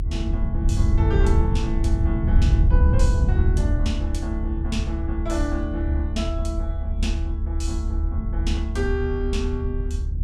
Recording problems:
low-frequency rumble; below 82 Hz, SNR -6 dB

